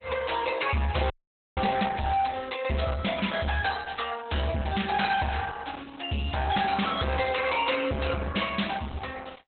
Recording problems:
codec artefacts; Opus, log-spectral distance 6 dB, nothing above 4 kHz
distorted audio; hard clipping, signal-to-distortion ratio 8 dB
audio freezing; at 1 s

